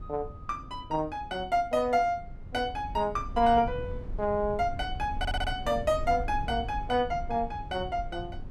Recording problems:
low-frequency rumble; below 94 Hz, SNR 11 dB
stutter; at 5 s

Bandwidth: 14.5 kHz